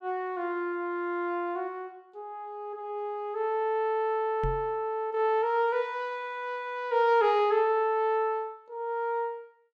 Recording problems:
microphone thump; at 4.5 s; peak -1 dB vs average level

